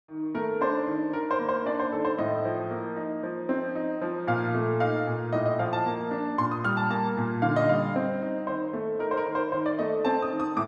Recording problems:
none

